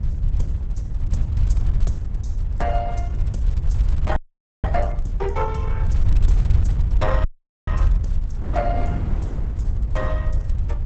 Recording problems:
lossy compression; Opus, log-spectral distance 2 dB, nothing above 8 kHz
rumble; below 76 Hz, SNR -7 dB
wind on the microphone; below 170 Hz, SNR 6 dB
frozen audio; at 4 s and at 7 s

